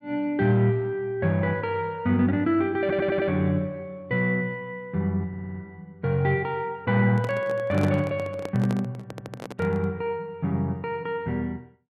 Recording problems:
stutter; at 3 s, at 5.5 s and at 9 s
handling noise; from 7 to 10 s; peak -2 dB vs average level

